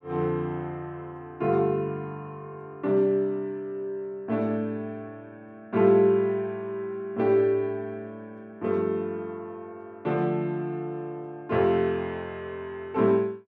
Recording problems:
none

